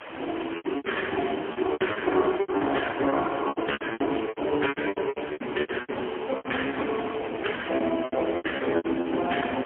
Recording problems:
phone line; 260 Hz to 3.2 kHz, AMR-NB, then MP3
background hiss; SNR 11 dB
lost packets; 18% of the sound replaced, filled with repeated pitch periods

